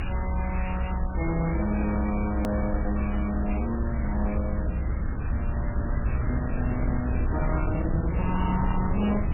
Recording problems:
lossy codec; MP2, then MP3, log-spectral distance 11 dB, nothing above 2.4 kHz
distortion; hard clipping, uneven, signal-to-distortion ratio 11 dB
hiss; SNR 12 dB
low-frequency rumble; below 110 Hz, SNR -1 dB
edit click; at 2.5 s

